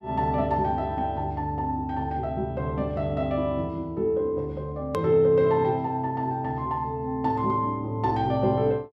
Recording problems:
hard cut with a click; at 5 s

